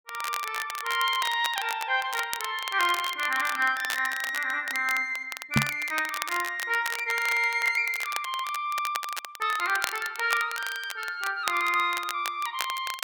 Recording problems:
crackling; vinyl, SNR 9 dB
microphone bump; at 5.5 s; peak +7 dB vs average level

